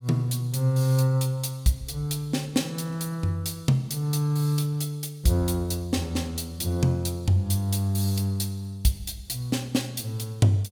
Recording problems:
none

